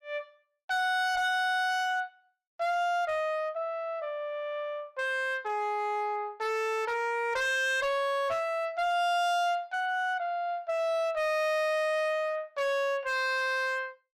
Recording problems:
distortion; hard clipping, uneven, signal-to-distortion ratio 10 dB

